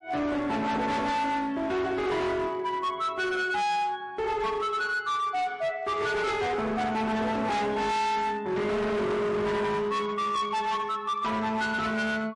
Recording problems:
lossy compression; MP3, log-spectral distance 2 dB, nothing above 10.4 kHz
distortion; hard clipping, signal-to-distortion ratio 7 dB

